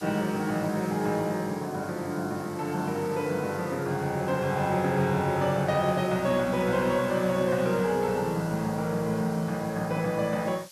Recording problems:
hiss; slope +3 dB per octave, SNR 20 dB

